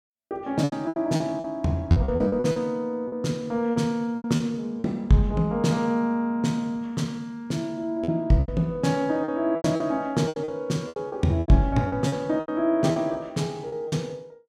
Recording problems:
packet loss; 11% of the sound replaced, filled with repeated pitch periods

